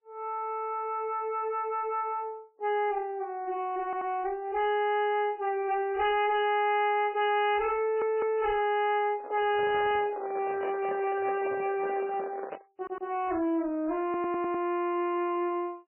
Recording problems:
codec artefacts; MP3, log-spectral distance 2 dB, nothing above 2.9 kHz
distorted audio; soft clipping, signal-to-distortion ratio 6 dB
stutter; 4 times, first at 4 s
microphone handling noise; from 9 to 13 s; peak -4 dB vs average level

